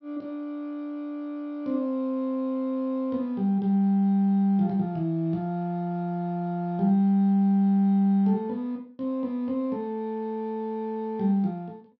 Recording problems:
treble missing; nothing above 5.9 kHz

